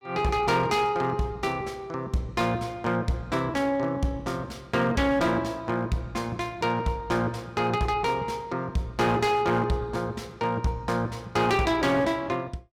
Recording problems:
distortion; hard clipping, signal-to-distortion ratio 12 dB

